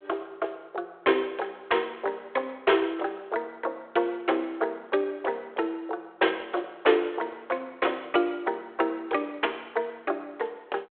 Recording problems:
telephone audio; 320 Hz to 3.5 kHz, G.726

